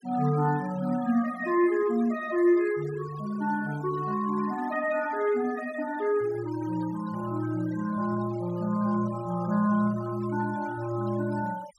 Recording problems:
noise reduction artefacts; signal-to-artefact ratio 19 dB

